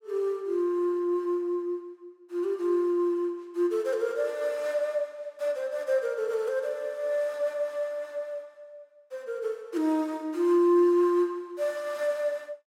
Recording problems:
none

